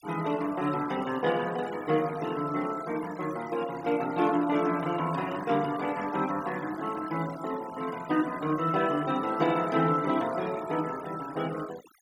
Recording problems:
noise reduction artefacts; signal-to-artefact ratio 17 dB

